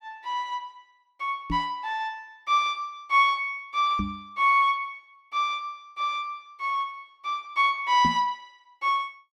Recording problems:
microphone thump; at 1.5 s, at 4 s and at 8 s; peak 0 dB vs average level

